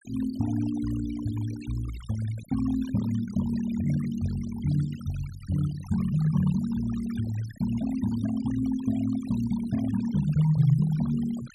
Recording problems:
noise reduction artefacts; signal-to-artefact ratio 17 dB

